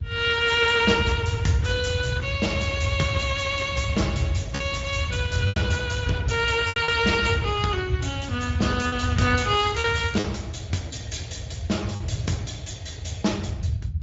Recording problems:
low-pass filter; nothing above 7.6 kHz
lossy codec; Speex, log-spectral distance 4 dB
low-frequency rumble; below 120 Hz, SNR 4 dB
lost packets; 3% of the sound replaced, filled with repeated pitch periods
crackling; at 9.5 s; loose cable, SNR 18 dB

